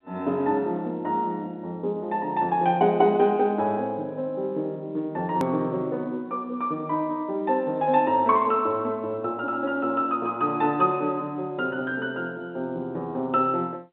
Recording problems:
telephone audio; 220 Hz to 3.8 kHz, G.711
click at an edit; at 5.5 s

